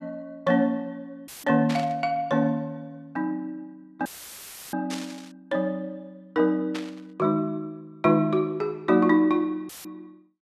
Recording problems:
dropout; at 1.5 s, at 4 s for 0.5 s and at 9.5 s; filled with static
static burst; at 1.5 s, at 5 s and at 6.5 s; peak -5 dB vs average level

